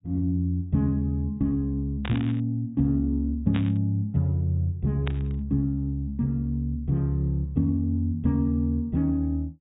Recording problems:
low-pass filter; nothing above 4 kHz
static burst; at 2 s, at 3.5 s and at 5 s; peak -5 dB vs average level

